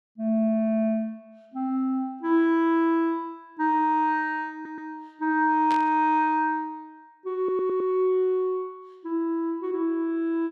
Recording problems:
audio stuttering; at 4.5 s and at 7.5 s
static burst; at 5.5 s; peak -7 dB vs average level

